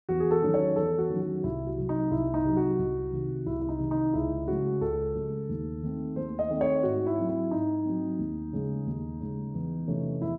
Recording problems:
none

